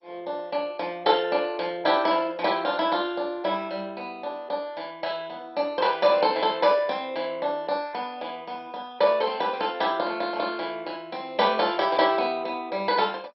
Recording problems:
lossy compression; MP2, log-spectral distance 3 dB, nothing above 4.5 kHz

